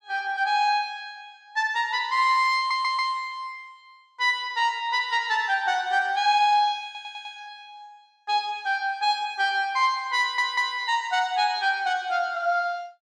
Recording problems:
stutter; at 2.5 s, at 7 s and at 10 s

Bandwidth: 12 kHz